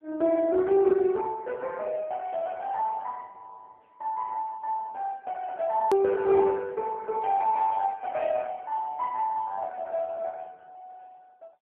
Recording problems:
phone line; 170 Hz to 3 kHz, AMR-NB
click at an edit; at 6 s

